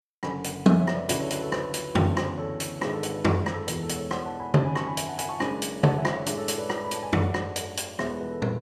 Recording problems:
none

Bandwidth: 14.5 kHz